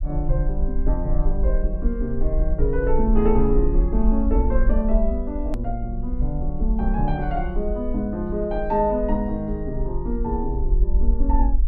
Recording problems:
low-frequency rumble; below 48 Hz, SNR 1 dB
hard cut with a click; at 5.5 s

